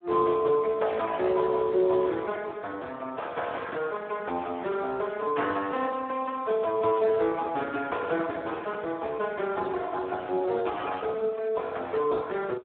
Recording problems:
phone line; 300 Hz to 3.6 kHz, Speex
burst of static; 4 times, first at 2 s; peak -15 dB vs average level

